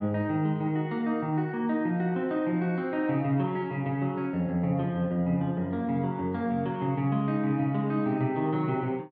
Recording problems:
none

